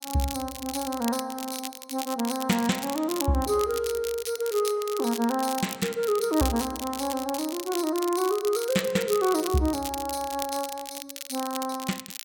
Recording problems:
crackle; vinyl, SNR 9 dB

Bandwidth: 17 kHz